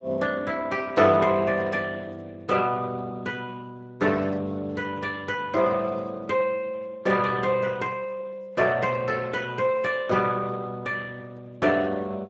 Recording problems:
lossy codec; Speex, log-spectral distance 4 dB

